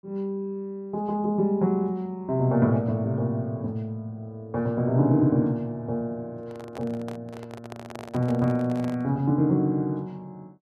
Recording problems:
handling noise; from 6.5 to 9 s; peak -10 dB vs average level

